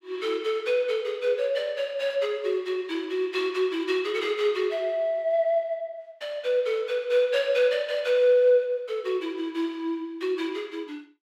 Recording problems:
none

